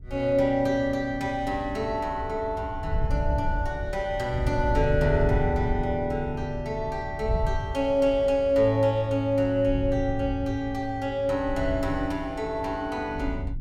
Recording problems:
wind noise; below 92 Hz, SNR 8 dB

